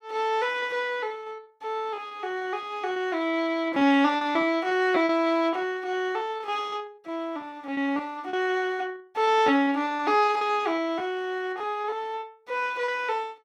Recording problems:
packet loss; 12% of the sound replaced, filled with repeated pitch periods

